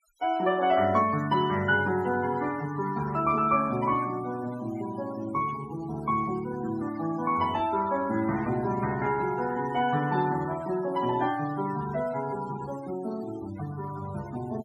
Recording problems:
noise reduction artefacts; signal-to-artefact ratio 15 dB

